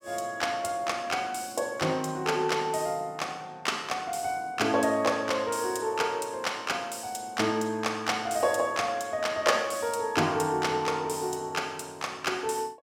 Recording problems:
none

